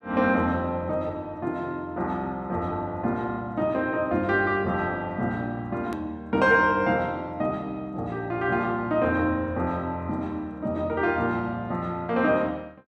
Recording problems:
edit click; at 6 s

